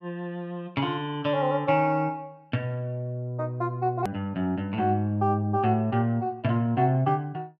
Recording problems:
edit click; at 4 s

